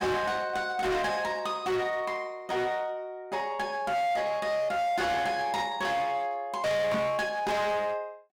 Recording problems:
distortion; hard clipping, signal-to-distortion ratio 7 dB
microphone bump; at 7 s; peak +3 dB vs average level

